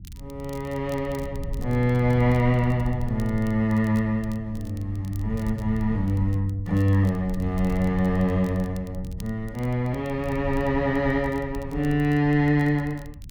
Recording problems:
rumble; below 98 Hz, SNR 12 dB
crackle; vinyl, SNR 28 dB

